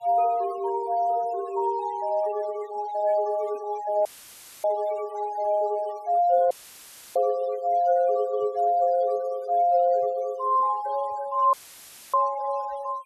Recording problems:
denoising artefacts; signal-to-artefact ratio 21 dB
audio cutting out; at 4 s for 0.5 s, at 6.5 s for 0.5 s and at 12 s for 0.5 s; filled with static

